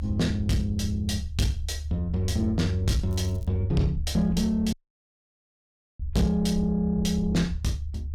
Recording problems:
distortion; soft clipping, signal-to-distortion ratio 12 dB
low-frequency rumble; below 76 Hz, strongest tone 74 Hz, SNR 8 dB
crackle; at 3 s; loose cable, SNR 28 dB
dropout; at 4.5 s for 1.5 s

